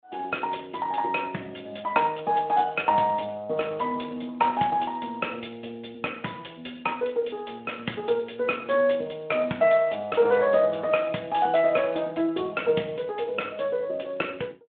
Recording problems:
phone line; 280 Hz to 3.5 kHz, Speex

